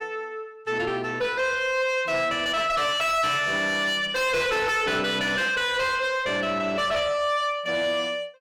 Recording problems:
distortion; soft clipping, signal-to-distortion ratio 6 dB

